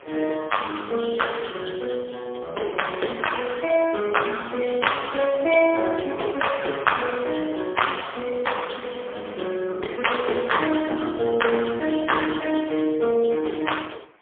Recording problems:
phone line; 260 Hz to 3.4 kHz, AMR-NB, then MP3
wind on the microphone; below 2.1 kHz, SNR 24 dB

